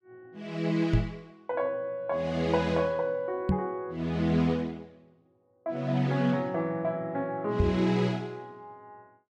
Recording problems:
microphone bump; at 1 s, at 3.5 s and at 7.5 s; peak +7 dB vs average level

